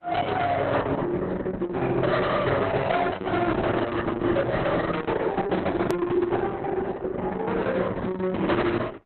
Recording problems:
lossy compression; Opus, log-spectral distance 3 dB, nothing above 13.1 kHz
distorted audio; soft clipping, signal-to-distortion ratio 11 dB
hard cut with a click; at 6 s

